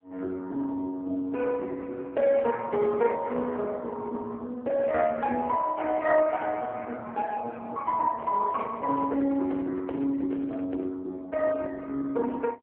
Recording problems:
phone line; 150 Hz to 3 kHz, AMR-NB
microphone handling noise; from 8 to 11 s; peak -7 dB vs average level

